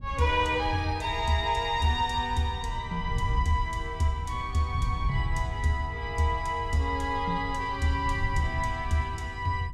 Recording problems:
wind noise; below 100 Hz, SNR 7 dB

